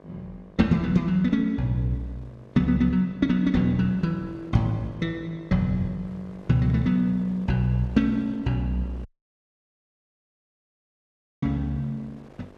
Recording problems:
hum; 50 Hz, harmonics up to 1.8 kHz, SNR 24 dB
wind noise; below 790 Hz, SNR 30 dB
audio cutting out; at 9 s for 2.5 s

